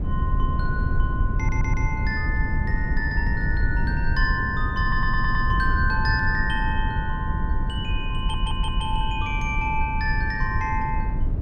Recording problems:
low-frequency rumble; below 100 Hz, SNR -1 dB
audio stuttering; at 1.5 s, at 5 s and at 8 s

